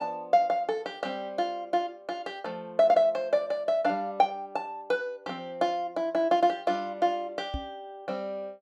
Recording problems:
microphone thump; at 7.5 s; peak -3 dB vs average level

